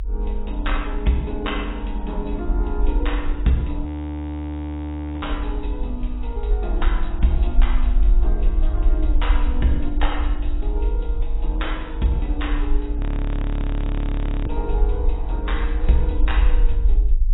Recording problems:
lossy compression; AAC, log-spectral distance 2 dB, nothing above 3.8 kHz
low-frequency rumble; below 48 Hz, SNR -4 dB
frozen audio; at 4 s for 1.5 s and at 13 s for 1.5 s

